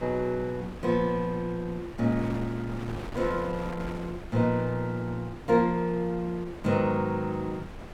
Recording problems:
wind on the microphone; below 690 Hz, SNR 13 dB

